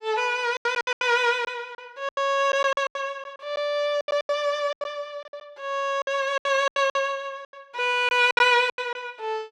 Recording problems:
lost packets; 15% of the sound replaced, filled with silence

